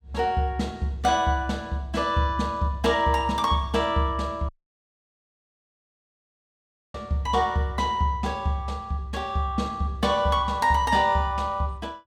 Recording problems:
audio cutting out; at 4.5 s for 2.5 s

